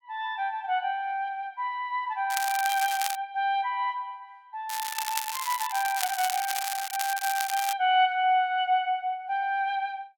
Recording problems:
crackling; at 2.5 s and from 4.5 to 7.5 s; loose cable, SNR 5 dB

